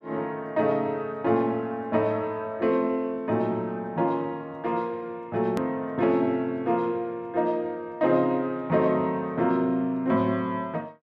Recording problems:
click at an edit; at 5.5 s

